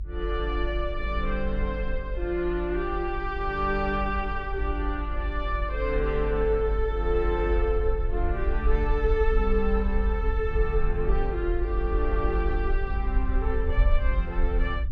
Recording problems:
low-frequency rumble; below 50 Hz, SNR 1 dB

